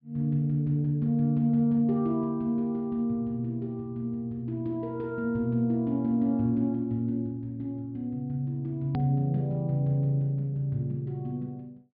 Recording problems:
treble cut off; nothing above 4.9 kHz
click at an edit; at 9 s

